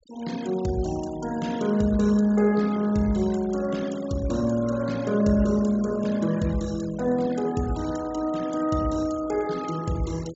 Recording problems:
low-pass filter; nothing above 8 kHz
noise reduction artefacts; signal-to-artefact ratio 20 dB

